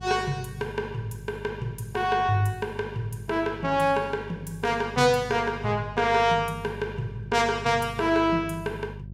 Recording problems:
hum; 50 Hz, harmonics up to 400 Hz, SNR 15 dB

